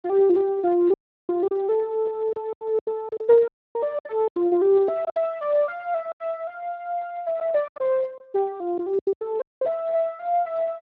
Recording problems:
lossy compression; Speex, log-spectral distance 2 dB
packet loss; 8% of the sound replaced, filled with silence
dropout; at 1 s, at 3.5 s and at 9.5 s

